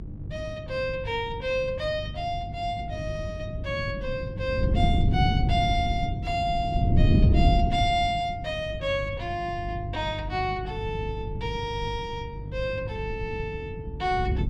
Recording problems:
electrical hum; 50 Hz, harmonics up to 500 Hz, SNR 10 dB
wind noise; below 160 Hz, SNR 0 dB

